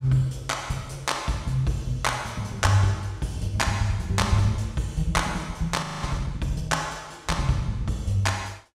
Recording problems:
audio freezing; at 6 s

